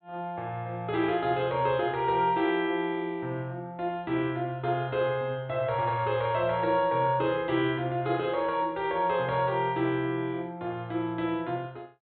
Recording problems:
treble missing; nothing above 4 kHz

